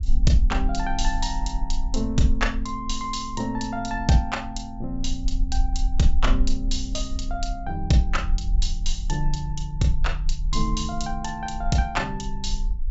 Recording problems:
treble cut off; nothing above 8 kHz
rumble; below 42 Hz, strongest tone 18 Hz, SNR 3 dB

